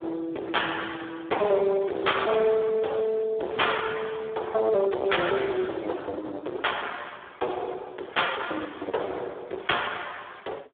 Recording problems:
phone line; 300 Hz to 3.6 kHz, Speex
distorted audio; hard clipping, signal-to-distortion ratio 7 dB

